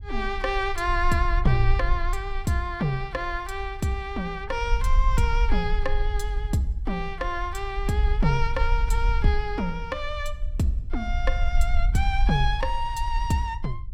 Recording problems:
low-frequency rumble; below 50 Hz, SNR 2 dB

